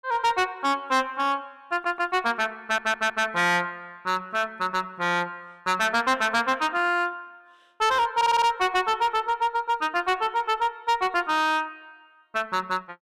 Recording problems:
distortion; hard clipping, signal-to-distortion ratio 8 dB
stutter; at 1.5 s, at 2.5 s and at 8 s

